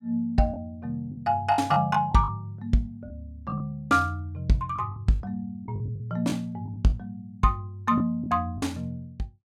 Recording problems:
packet loss; 7% of the sound replaced, filled with the last packet

